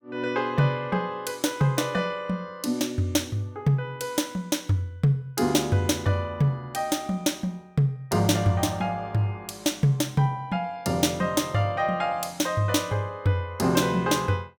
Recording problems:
none

